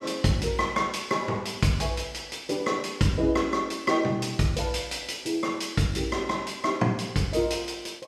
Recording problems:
none

